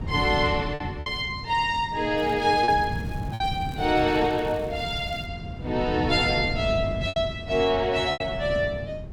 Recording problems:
wind noise; below 190 Hz, SNR 9 dB
packet loss; 4% of the sound replaced, filled with repeated pitch periods
crackling; from 2 to 5.5 s; loose cable, SNR 28 dB

